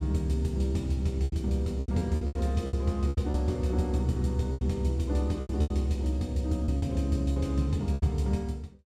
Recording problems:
lost packets; 10% of the sound replaced, filled with repeated pitch periods

